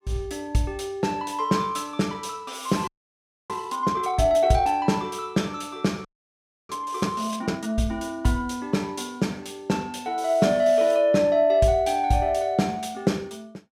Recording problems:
frozen audio; at 3 s for 0.5 s and at 6 s for 0.5 s

